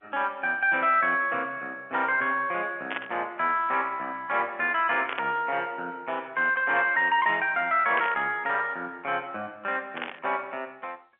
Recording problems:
phone line; 300 Hz to 3.3 kHz, G.711
burst of static; 4 times, first at 3 s; peak -2 dB vs average level

